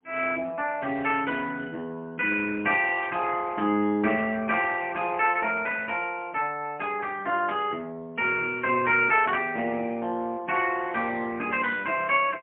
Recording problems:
telephone audio; 170 Hz to 3.4 kHz, AMR-NB, then MP3
static burst; at 3 s; peak -16 dB vs average level

